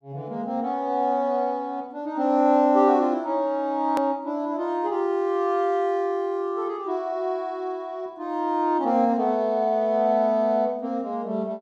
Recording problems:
hard cut with a click; at 4 s

